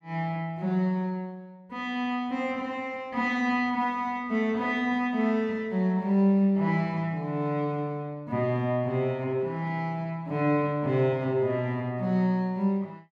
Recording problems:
none

